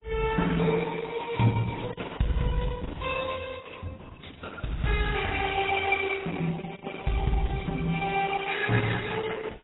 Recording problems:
lossy codec; Opus, then AAC, log-spectral distance 6 dB, nothing above 3.8 kHz

